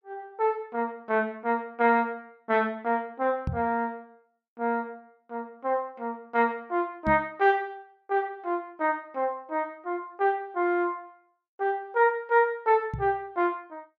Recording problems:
microphone bump; at 3.5 s, at 7 s and at 13 s; peak 0 dB vs average level

